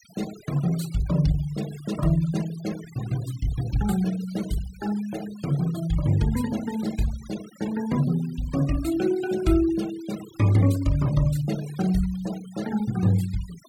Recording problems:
noise reduction artefacts; signal-to-artefact ratio 18 dB

